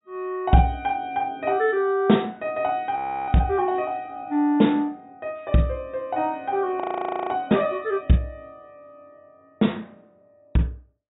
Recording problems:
treble cut off; nothing above 4 kHz
frozen audio; at 3 s and at 7 s for 0.5 s

